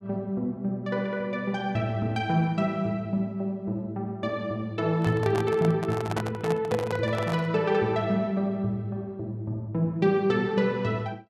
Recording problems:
handling noise; from 5 to 7.5 s; peak 0 dB vs average level

